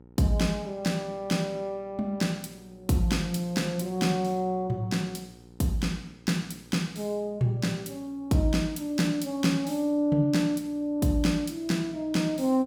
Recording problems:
hum; 60 Hz, harmonics up to 960 Hz, SNR 26 dB

